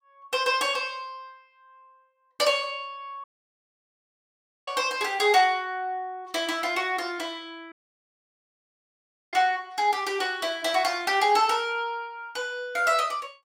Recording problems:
audio cutting out; at 3 s for 1.5 s and at 7.5 s for 1.5 s

